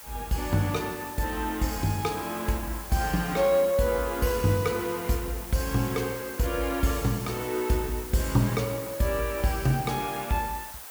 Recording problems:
background hiss; SNR 12 dB

